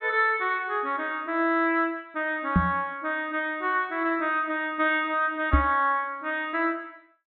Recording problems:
treble missing; nothing above 4.2 kHz
knock on the microphone; at 2.5 s and at 5.5 s; peak +7 dB vs average level

